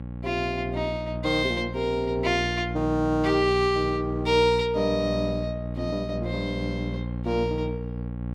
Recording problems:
hum; 60 Hz, harmonics up to 840 Hz, SNR 7 dB

